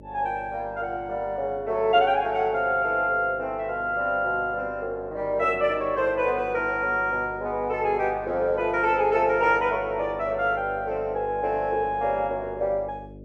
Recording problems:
hum; 50 Hz, harmonics up to 600 Hz, SNR 20 dB

